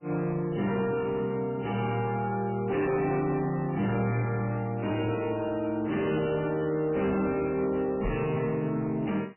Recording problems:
lossy codec; MP3, log-spectral distance 3 dB, nothing above 2.8 kHz
distortion; soft clipping, signal-to-distortion ratio 10 dB
microphone bump; at 8 s; peak 0 dB vs average level

